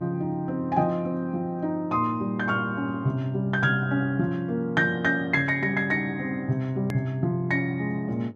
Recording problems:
electrical hum; 50 Hz, harmonics up to 900 Hz, SNR 23 dB
hard cut with a click; at 7 s

